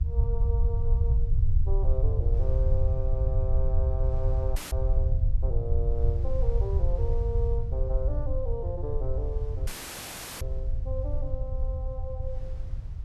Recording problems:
low-frequency rumble; below 76 Hz, SNR -9 dB
wind on the microphone; below 440 Hz, SNR 19 dB
audio cutting out; at 4.5 s and at 9.5 s for 0.5 s

